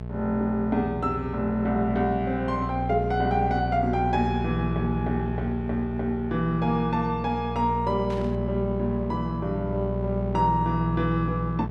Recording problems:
hum; 60 Hz, harmonics up to 1.1 kHz, SNR 5 dB
burst of static; at 8 s; peak -13 dB vs average level

